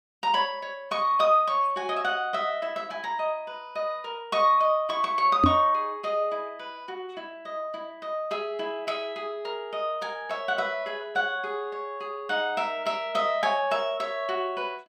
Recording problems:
knock on the microphone; at 5.5 s; peak +8 dB vs average level

